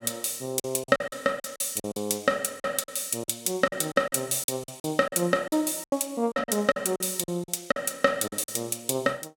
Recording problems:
lost packets; 13% of the sound replaced, filled with silence

